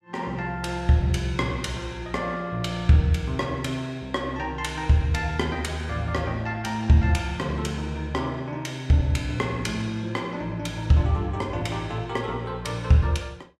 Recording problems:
none

